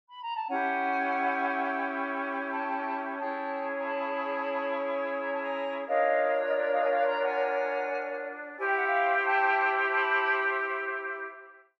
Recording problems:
none

